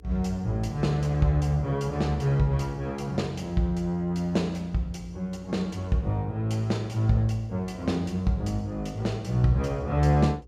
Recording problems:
hum; 60 Hz, harmonics up to 480 Hz, SNR 23 dB

